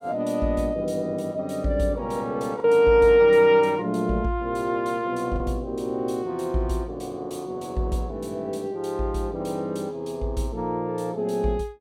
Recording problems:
lost packets; 0.7% of the sound replaced, filled with the last packet

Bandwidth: 17 kHz